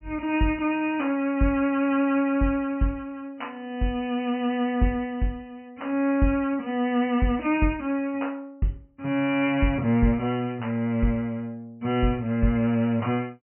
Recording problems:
low-pass filter; nothing above 3 kHz

